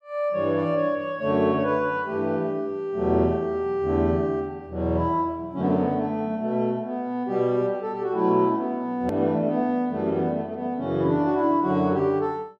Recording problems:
click at an edit; at 9 s

